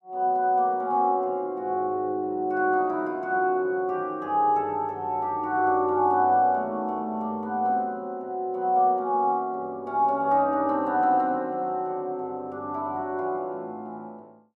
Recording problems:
none

